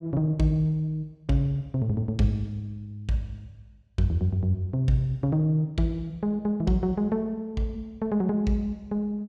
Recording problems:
none

